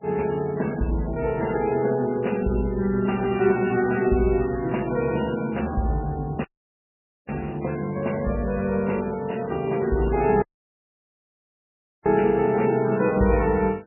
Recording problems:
lossy compression; MP3, log-spectral distance 4 dB, nothing above 2.8 kHz
dropout; at 6.5 s for 1 s and at 10 s for 1.5 s

